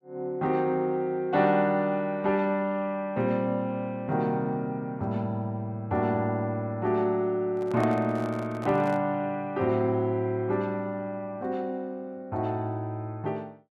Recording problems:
handling noise; from 7.5 to 9 s; peak -4 dB vs average level

